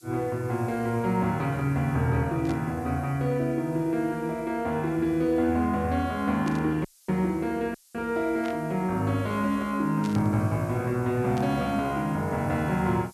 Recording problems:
background hiss; slope +5 dB per octave, SNR 26 dB
burst of static; 5 times, first at 2.5 s; peak -10 dB vs average level
dropout; at 7 s and at 7.5 s

